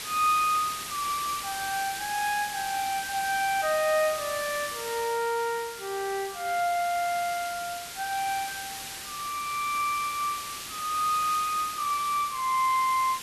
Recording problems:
hiss; slope +1 dB per octave, SNR 8 dB

